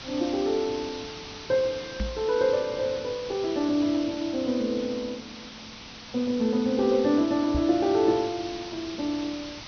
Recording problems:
treble missing; nothing above 6.2 kHz
hiss; slope 0 dB per octave, SNR 13 dB
knock on the microphone; at 2 s and at 7.5 s; peak 0 dB vs average level

